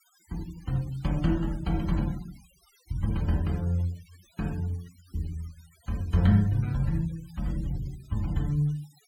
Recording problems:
denoising artefacts; signal-to-artefact ratio 24 dB

